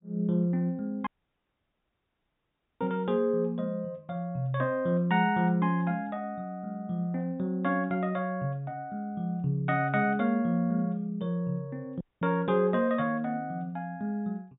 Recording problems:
treble missing; nothing above 4 kHz
audio cutting out; at 1 s for 1.5 s and at 12 s

